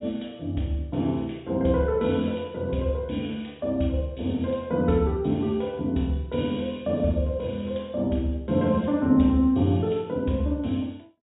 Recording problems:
treble cut off; nothing above 4 kHz

